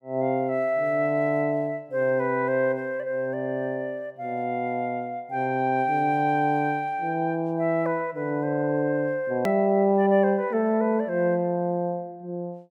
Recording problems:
edit click; at 9.5 s

